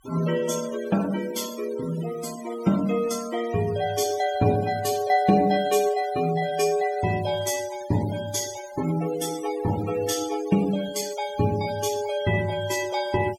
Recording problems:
noise reduction artefacts; signal-to-artefact ratio 15 dB

